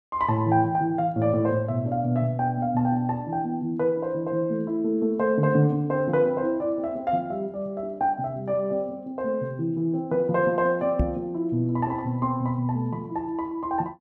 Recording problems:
microphone bump; at 11 s; peak +3 dB vs average level

